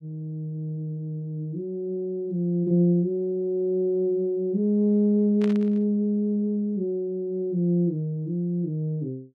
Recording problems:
static burst; at 5.5 s; peak -10 dB vs average level

